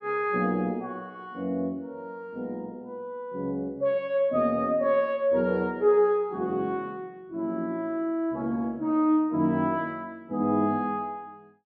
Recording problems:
none

